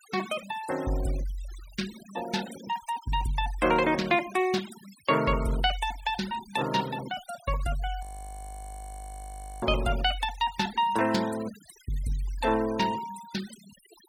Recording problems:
noise reduction artefacts; signal-to-artefact ratio 16 dB
audio freezing; at 8 s for 1.5 s

